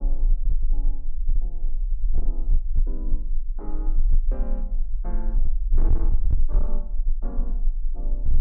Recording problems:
distortion; hard clipping, signal-to-distortion ratio 12 dB
low-frequency rumble; below 32 Hz, strongest tone 16 Hz, SNR -15 dB

